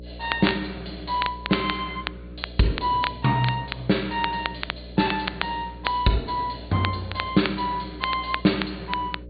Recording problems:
low-pass filter; nothing above 4.6 kHz
hum; 60 Hz, harmonics up to 600 Hz, SNR 15 dB
crackling; vinyl, SNR 8 dB

